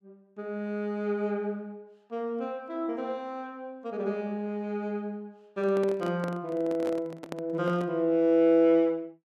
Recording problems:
handling noise; from 5.5 to 8 s; peak -5 dB vs average level

